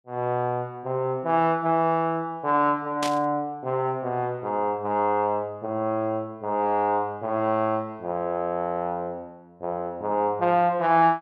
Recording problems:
static burst; at 3 s; peak -1 dB vs average level

